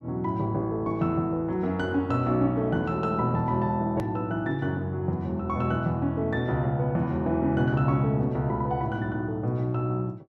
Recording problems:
edit click; at 4 s

